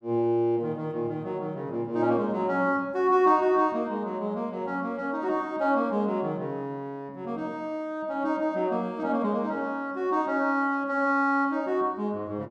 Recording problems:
none

